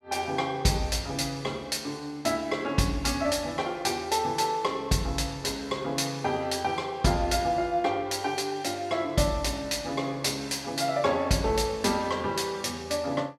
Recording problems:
none

